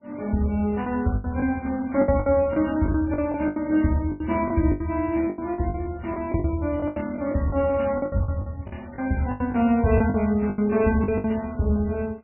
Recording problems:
codec artefacts; MP3, log-spectral distance 3 dB, nothing above 2.4 kHz
lost packets; 13% of the sound replaced, filled with the last packet

